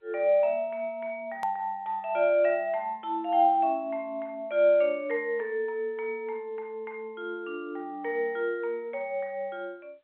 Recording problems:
phone line; 370 Hz to 3.5 kHz, G.711
click at an edit; at 1.5 s

